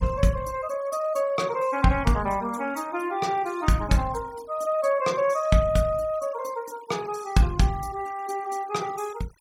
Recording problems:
noise reduction artefacts; signal-to-artefact ratio 21 dB

